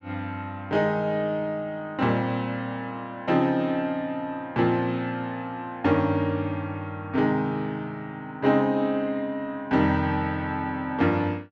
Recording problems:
none

